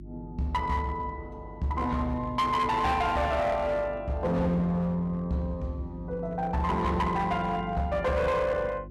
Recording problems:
distortion; hard clipping, uneven, signal-to-distortion ratio 10 dB
electrical hum; 50 Hz, harmonics up to 350 Hz, SNR 16 dB

